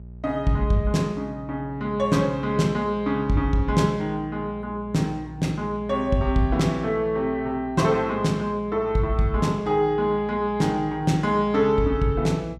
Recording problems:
mains hum; 60 Hz, harmonics up to 420 Hz, SNR 18 dB

